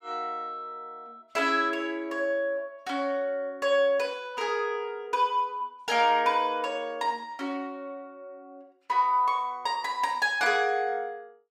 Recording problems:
none

